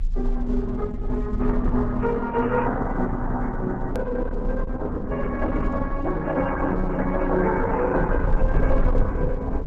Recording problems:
lossy codec; MP3, then Opus, log-spectral distance 2 dB
rumble; below 46 Hz, strongest tone 28 Hz, SNR 5 dB
hard cut with a click; at 4 s

